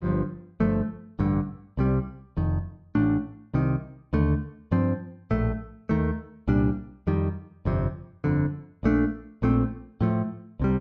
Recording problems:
none

